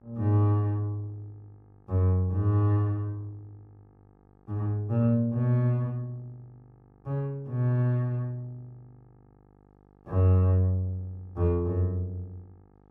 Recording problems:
hum; 50 Hz, harmonics up to 1.4 kHz, SNR 32 dB

